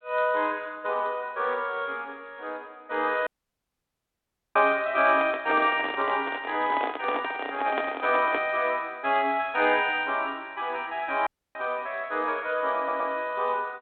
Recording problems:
telephone audio; 240 Hz to 3.9 kHz, G.726
dropout; at 3.5 s for 1.5 s and at 11 s
handling noise; from 5 to 8.5 s; peak +1 dB vs average level
stutter; at 13 s

